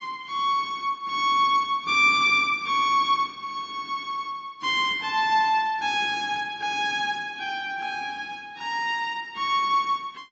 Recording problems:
lossy codec; AAC, log-spectral distance 2 dB, nothing above 6.7 kHz

